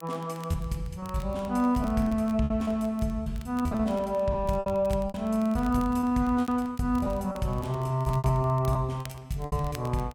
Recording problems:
crackle; vinyl, SNR 24 dB
lost packets; 14% of the sound replaced, filled with repeated pitch periods

